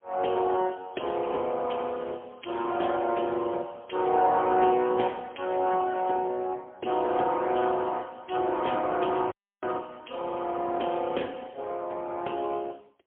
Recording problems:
telephone audio; 300 Hz to 3.3 kHz, AMR-NB, then MP3
audio cutting out; at 9.5 s

